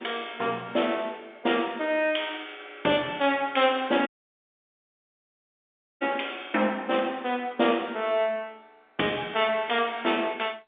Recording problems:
phone line; 260 Hz to 3.6 kHz, G.711
dropout; at 4 s for 2 s

